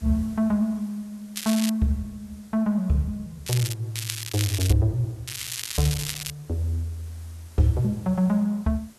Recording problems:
hiss; slope -3 dB per octave, SNR 27 dB
crackling; 4 times, first at 1.5 s; loose cable, SNR 6 dB

